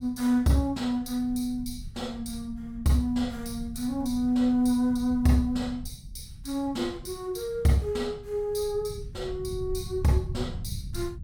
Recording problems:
low-frequency rumble; below 120 Hz, SNR 14 dB

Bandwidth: 17 kHz